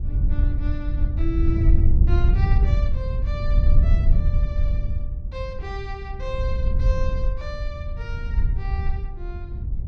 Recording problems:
wind on the microphone; below 72 Hz, SNR -11 dB

